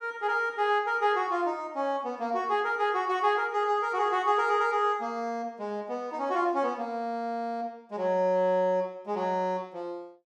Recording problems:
none

